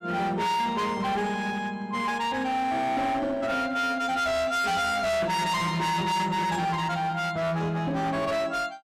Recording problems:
distorted audio; hard clipping, uneven, signal-to-distortion ratio 7 dB

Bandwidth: 14.5 kHz